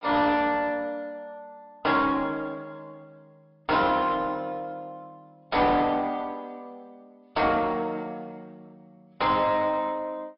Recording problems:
treble cut off; nothing above 5.3 kHz
codec artefacts; AAC, log-spectral distance 2 dB
distorted audio; soft clipping, signal-to-distortion ratio 6 dB

